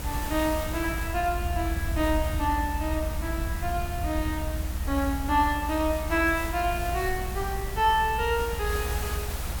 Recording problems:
hiss; slope -3 dB per octave, SNR 10 dB
rumble; below 76 Hz, strongest tone 56 Hz, SNR 5 dB

